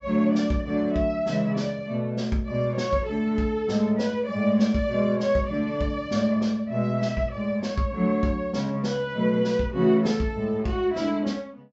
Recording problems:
treble cut off; nothing above 7.7 kHz

